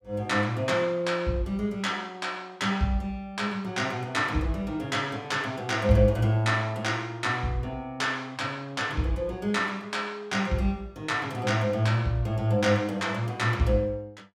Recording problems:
none

